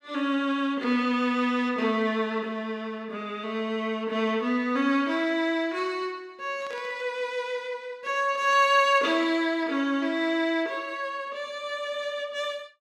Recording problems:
burst of static; at 6.5 s and at 8.5 s; peak -15 dB vs average level

